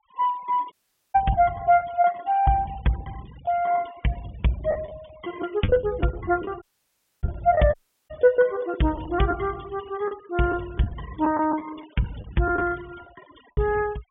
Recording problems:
low-pass filter; nothing above 3.5 kHz
denoising artefacts; signal-to-artefact ratio 22 dB
lost packets; 8% of the sound replaced, filled with the last packet
audio cutting out; at 0.5 s, at 6.5 s for 0.5 s and at 7.5 s

